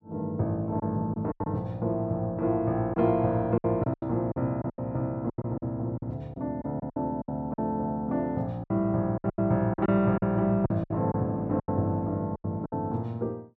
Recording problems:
packet loss; 11% of the sound replaced, filled with silence

